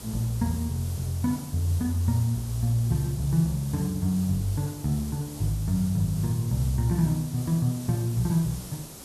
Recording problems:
background hiss; SNR 15 dB

